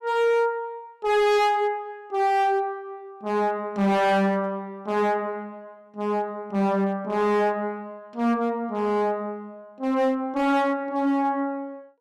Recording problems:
distorted audio; hard clipping, signal-to-distortion ratio 7 dB

